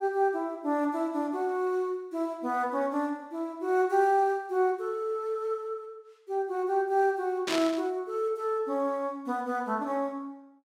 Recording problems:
static burst; at 7.5 s; peak +1 dB vs average level

